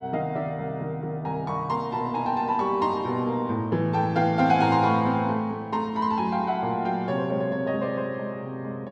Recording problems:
none

